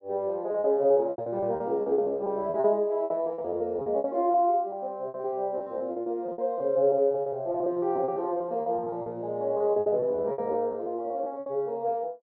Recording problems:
packet loss; 18% of the sound replaced, filled with repeated pitch periods

